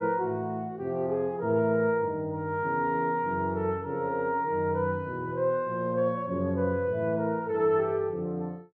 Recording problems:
none

